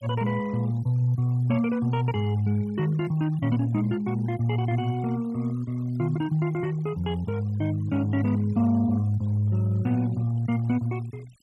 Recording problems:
denoising artefacts; signal-to-artefact ratio 24 dB

